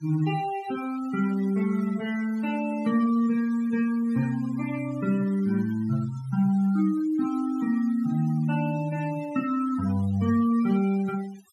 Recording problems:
noise reduction artefacts; signal-to-artefact ratio 19 dB

